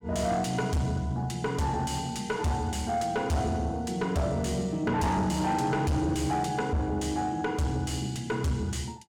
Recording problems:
distorted audio; soft clipping, signal-to-distortion ratio 7 dB

